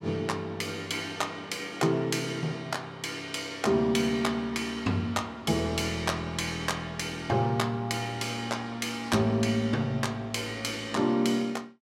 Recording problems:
none

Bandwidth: 16 kHz